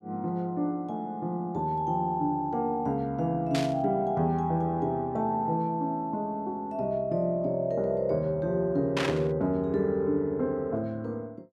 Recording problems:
static burst; at 3.5 s and at 9 s; peak +2 dB vs average level

